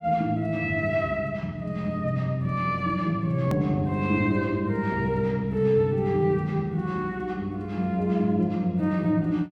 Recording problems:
edit click; at 3.5 s

